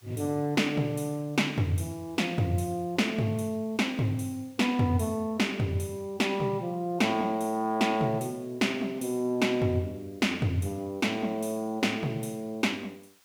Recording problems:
background hiss; SNR 30 dB

